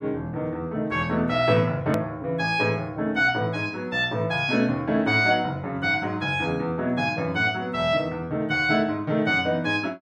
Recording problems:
hard cut with a click; at 2 s

